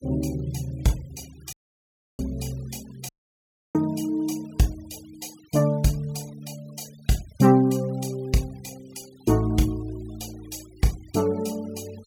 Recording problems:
denoising artefacts; signal-to-artefact ratio 23 dB
audio cutting out; at 1.5 s for 0.5 s and at 3 s for 0.5 s

